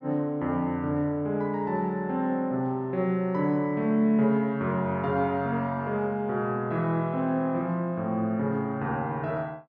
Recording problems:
none

